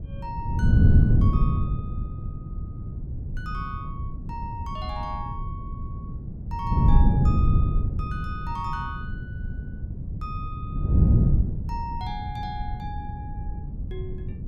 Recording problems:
wind noise; below 140 Hz, SNR -10 dB

